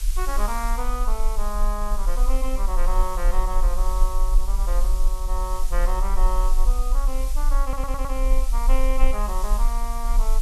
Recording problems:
background hiss; slope +2 dB per octave, SNR 9 dB
rumble; below 38 Hz, strongest tone 22 Hz, SNR -6 dB
stutter; at 7.5 s

